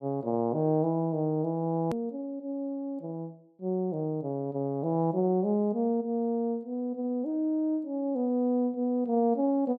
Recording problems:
click at an edit; at 2 s

